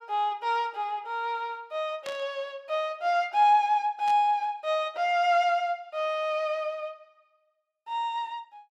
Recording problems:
static burst; at 2 s and at 4 s; peak -10 dB vs average level

